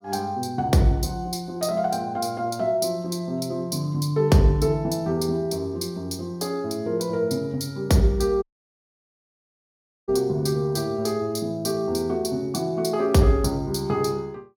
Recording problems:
dropout; at 8.5 s for 1.5 s

